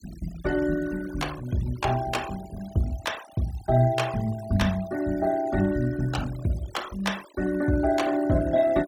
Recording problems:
denoising artefacts; signal-to-artefact ratio 17 dB

